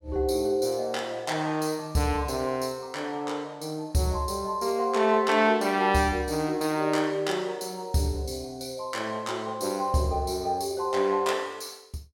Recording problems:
none

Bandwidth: 16.5 kHz